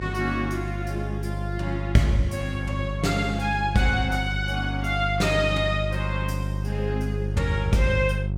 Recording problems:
hum; 50 Hz, harmonics up to 550 Hz, SNR 3 dB

